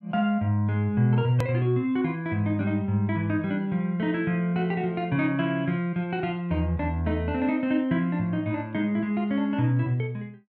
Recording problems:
hard cut with a click; at 1.5 s

